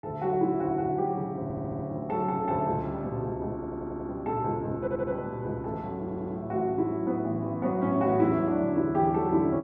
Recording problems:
audio stuttering; 4 times, first at 1.5 s

